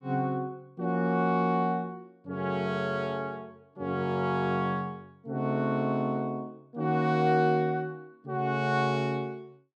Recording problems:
none

